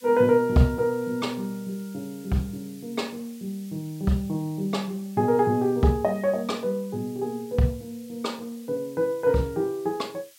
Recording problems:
hiss; SNR 24 dB

